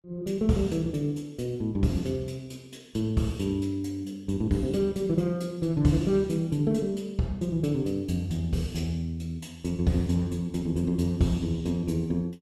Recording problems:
none

